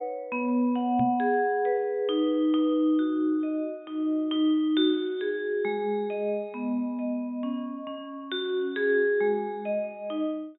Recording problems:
treble cut off; nothing above 4 kHz
knock on the microphone; at 1 s; peak -1 dB vs average level

